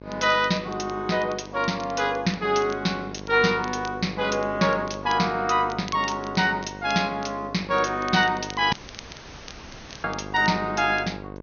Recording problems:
low-pass filter; nothing above 6.5 kHz
electrical hum; 50 Hz, harmonics up to 2.1 kHz, SNR 15 dB
crackling; vinyl, SNR 21 dB
dropout; at 8.5 s for 1.5 s

